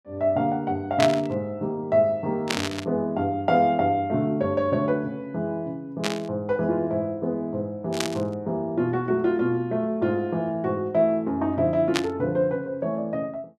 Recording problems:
burst of static; 5 times, first at 1 s; peak +4 dB vs average level

